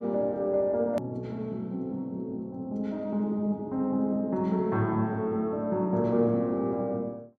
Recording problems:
edit click; at 1 s

